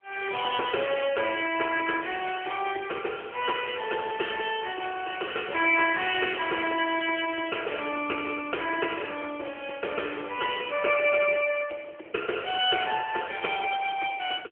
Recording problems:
phone line; 300 Hz to 3.2 kHz, AMR-NB

